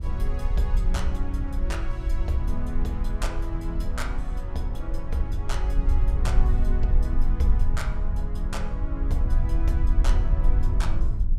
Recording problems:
low-frequency rumble; below 54 Hz, SNR -7 dB

